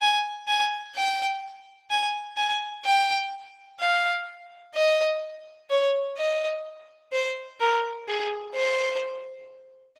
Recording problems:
lossy codec; Opus, log-spectral distance 4 dB, nothing above 20.1 kHz

